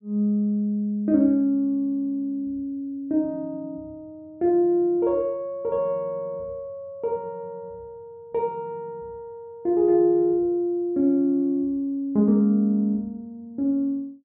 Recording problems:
none

